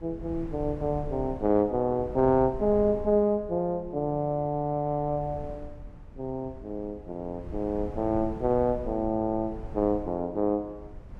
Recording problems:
wind on the microphone; below 120 Hz, SNR 15 dB

